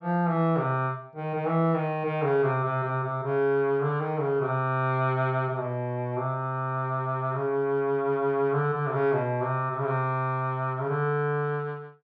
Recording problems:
none

